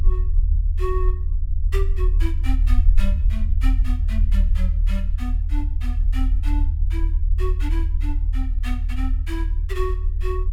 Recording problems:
rumble; below 74 Hz, strongest tone 38 Hz, SNR -11 dB

